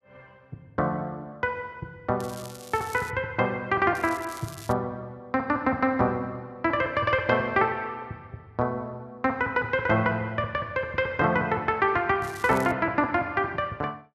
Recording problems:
crackling; at 2 s, at 4 s and at 12 s; loose cable, SNR 19 dB

